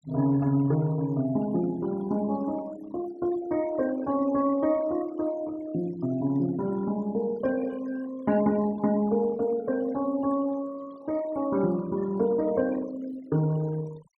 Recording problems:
noise reduction artefacts; signal-to-artefact ratio 21 dB

